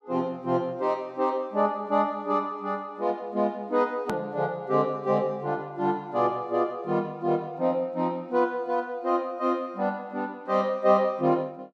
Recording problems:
hard cut with a click; at 4 s

